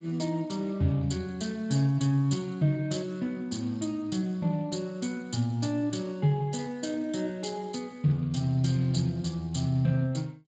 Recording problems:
lossy compression; Speex, log-spectral distance 4 dB, nothing above 7.3 kHz

